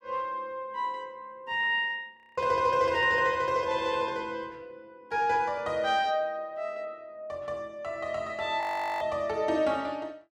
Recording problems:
frozen audio; at 2 s and at 8.5 s

